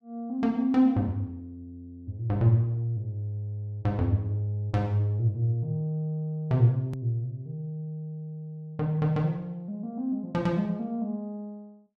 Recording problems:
hard cut with a click; at 7 s

